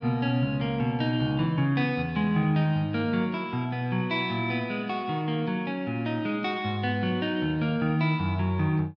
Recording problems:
none

